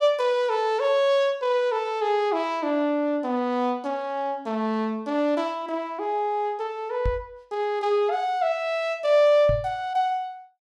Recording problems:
microphone bump; at 7 s and at 9.5 s; peak 0 dB vs average level

